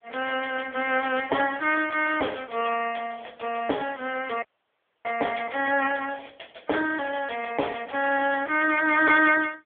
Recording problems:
telephone audio; 340 Hz to 3 kHz, AMR-NB
dropout; at 4.5 s for 0.5 s

